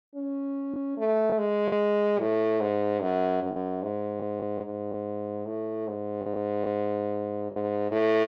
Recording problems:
packet loss; 4% of the sound replaced, filled with the last packet

